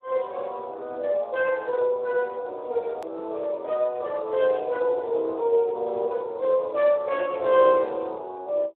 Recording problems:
telephone audio; 280 Hz to 3.6 kHz, Speex
hard cut with a click; at 3 s

